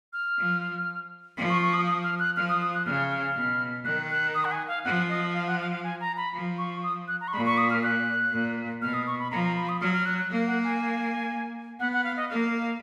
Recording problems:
none

